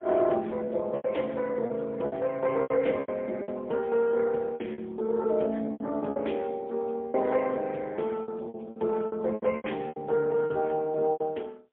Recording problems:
phone line; 260 Hz to 3.3 kHz, AMR-NB, then MP3
lost packets; 13% of the sound replaced, filled with repeated pitch periods

